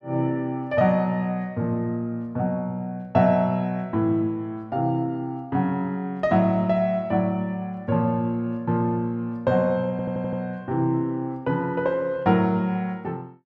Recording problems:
stutter; at 10 s

